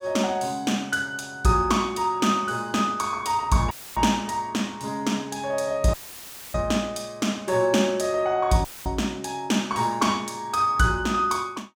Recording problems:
dropout; at 3.5 s, at 6 s for 0.5 s and at 8.5 s; filled with static

